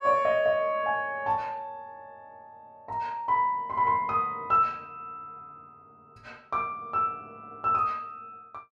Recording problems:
none

